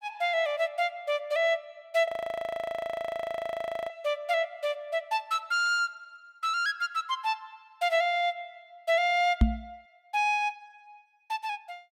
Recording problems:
frozen audio; at 2 s for 2 s
microphone bump; at 9.5 s; peak +11 dB vs average level

